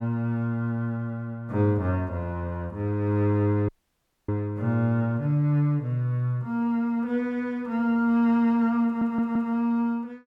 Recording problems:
dropout; at 3.5 s for 0.5 s
audio stuttering; at 9 s

